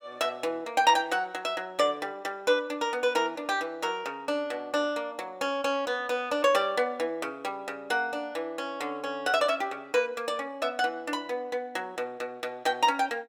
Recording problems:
none

